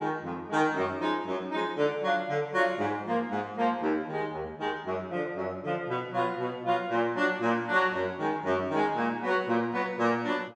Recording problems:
none

